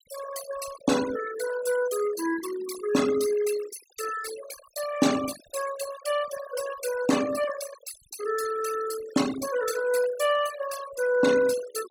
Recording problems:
noise reduction artefacts; signal-to-artefact ratio 10 dB

